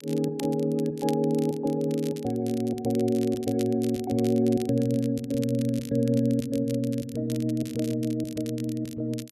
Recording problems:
crackle; vinyl, SNR 18 dB

